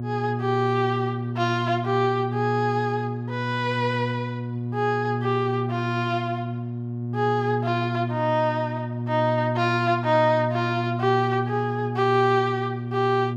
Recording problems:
electrical hum; 60 Hz, harmonics up to 720 Hz, SNR 4 dB

